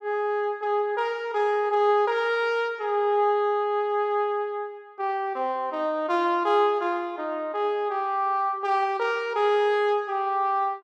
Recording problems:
none

